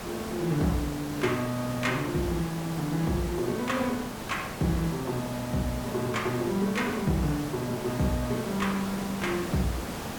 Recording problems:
background hiss; slope -5 dB per octave, SNR 7 dB

